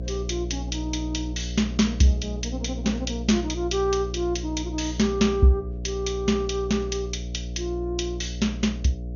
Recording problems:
codec artefacts; MP2, log-spectral distance 3 dB, nothing above 6.7 kHz
hum; 60 Hz, harmonics up to 660 Hz, SNR 7 dB

